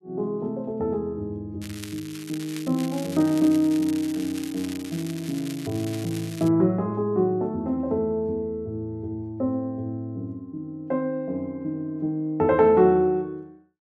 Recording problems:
crackling; from 1.5 to 6.5 s; loose cable, SNR 15 dB

